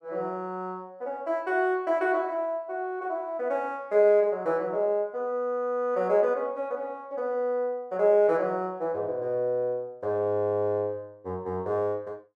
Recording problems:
none

